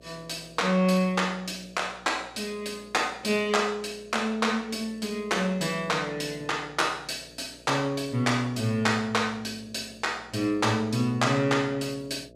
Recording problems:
hum; 60 Hz, harmonics up to 660 Hz, SNR 26 dB

